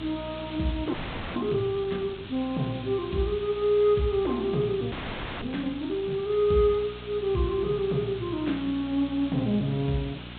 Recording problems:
treble cut off; nothing above 4 kHz
hum; 60 Hz, harmonics up to 480 Hz, SNR 16 dB
background hiss; SNR 16 dB
frozen audio; at 1 s and at 5 s for 0.5 s

